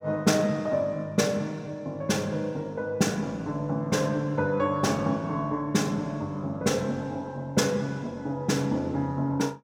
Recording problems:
none

